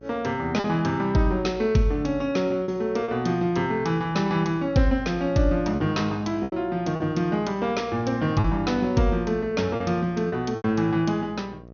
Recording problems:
treble missing; nothing above 6.3 kHz
electrical hum; 60 Hz, harmonics up to 1.2 kHz, SNR 21 dB
lost packets; 4% of the sound replaced, filled with repeated pitch periods

